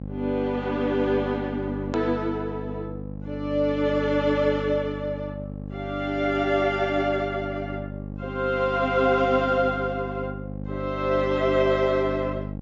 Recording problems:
low-pass filter; nothing above 8 kHz
mains hum; 50 Hz, harmonics up to 800 Hz, SNR 10 dB
click at an edit; at 2 s

